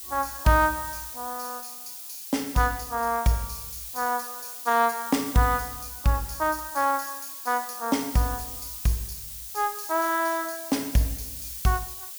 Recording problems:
hiss; slope +4 dB per octave, SNR 9 dB

